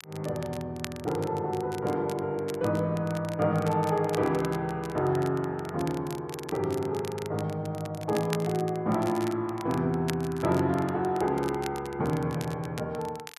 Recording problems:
crackle; vinyl, SNR 16 dB

